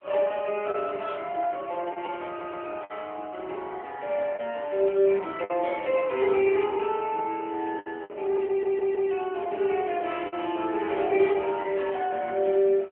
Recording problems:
phone line; 300 Hz to 3.3 kHz, AMR-NB
lost packets; 5% of the sound replaced, filled with the last packet
audio stuttering; at 2.5 s and at 8.5 s

